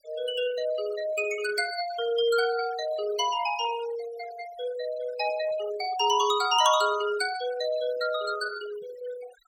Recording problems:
denoising artefacts; signal-to-artefact ratio 15 dB

